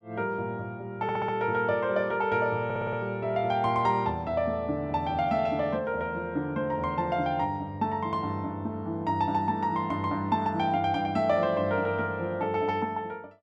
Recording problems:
audio stuttering; at 1 s and at 2.5 s

